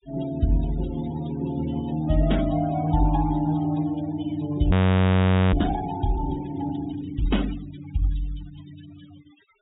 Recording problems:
treble cut off; nothing above 4 kHz
noise reduction artefacts; signal-to-artefact ratio 17 dB
audio freezing; at 4.5 s for 1 s

